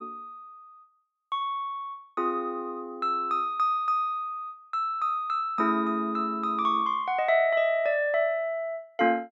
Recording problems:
none

